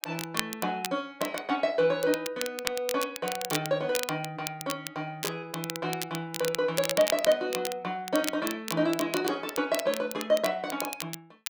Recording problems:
crackling; vinyl, SNR 7 dB

